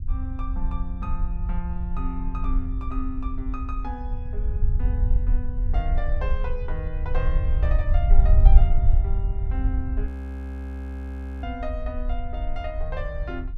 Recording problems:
rumble; below 58 Hz, SNR -9 dB
frozen audio; at 10 s for 1.5 s

